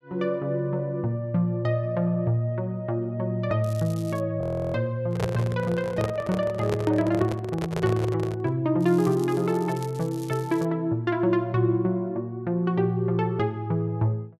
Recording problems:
crackling; at 3.5 s and from 9 to 11 s; loose cable, SNR 21 dB
frozen audio; at 4.5 s
handling noise; from 5 to 8.5 s; peak +1 dB vs average level

